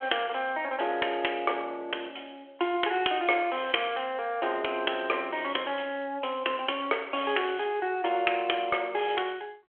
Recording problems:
telephone audio; 300 Hz to 3.3 kHz, G.726

